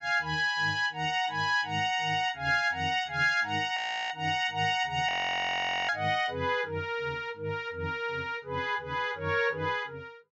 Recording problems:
treble cut off; nothing above 8 kHz
audio freezing; at 4 s and at 5 s for 1 s

